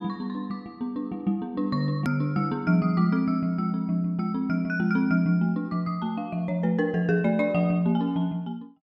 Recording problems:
edit click; at 2 s

